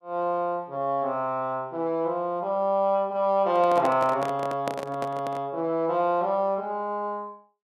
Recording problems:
microphone handling noise; from 3.5 to 5.5 s; peak -1 dB vs average level

